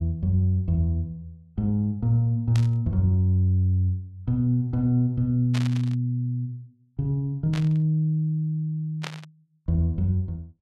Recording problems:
static burst; 4 times, first at 2.5 s; peak -6 dB vs average level

